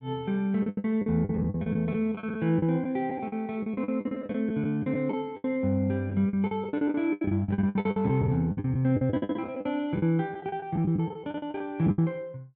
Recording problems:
packet loss; 19% of the sound replaced, filled with the last packet

